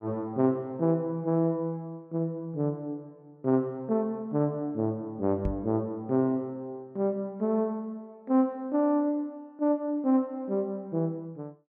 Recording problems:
knock on the microphone; at 5.5 s; peak +1 dB vs average level

